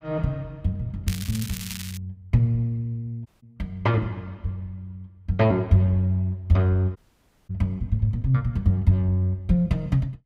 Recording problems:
crackle; at 1 s; loose cable, SNR 12 dB
dropout; at 3.5 s and at 7 s for 0.5 s

